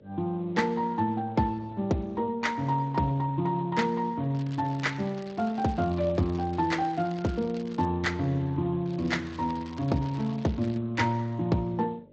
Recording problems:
lossy codec; Speex, log-spectral distance 3 dB, nothing above 7.3 kHz
electrical hum; 50 Hz, harmonics up to 650 Hz, SNR 27 dB
crackle; from 4.5 to 8 s and from 9 to 11 s; loose cable, SNR 21 dB

